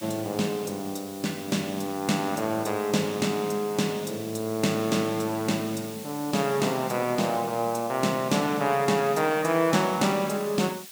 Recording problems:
hiss; slope +3 dB per octave, SNR 16 dB

